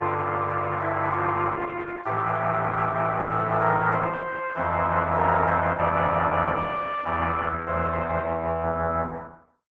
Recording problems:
lossy codec; Opus, log-spectral distance 4 dB

